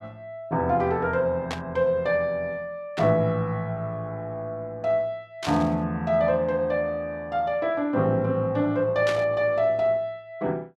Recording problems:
burst of static; 4 times, first at 1.5 s; peak -3 dB vs average level

